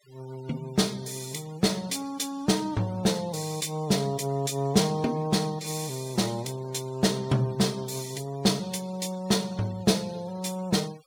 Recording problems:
noise reduction artefacts; signal-to-artefact ratio 23 dB

